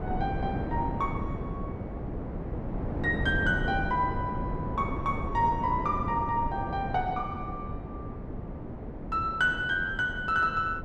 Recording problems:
wind noise; below 360 Hz, SNR 5 dB

